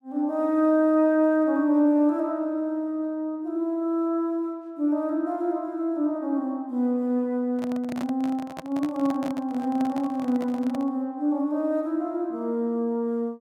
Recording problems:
handling noise; from 7.5 to 11 s; peak -7 dB vs average level

